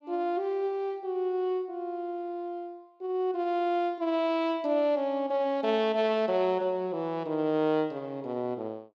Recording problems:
none

